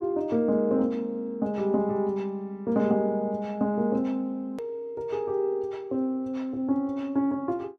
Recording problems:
edit click; at 4.5 s

